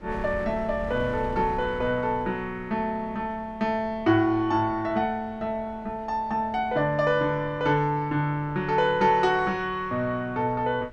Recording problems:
wind on the microphone; below 360 Hz, SNR 19 dB

